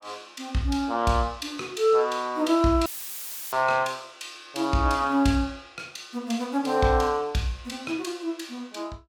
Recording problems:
dropout; at 3 s for 0.5 s; filled with static

